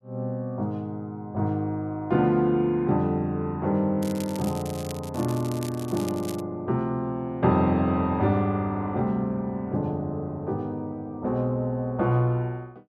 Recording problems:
crackling; from 4 to 6.5 s; loose cable, SNR 16 dB

